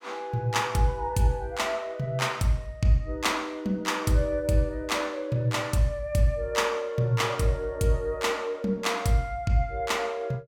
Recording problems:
none

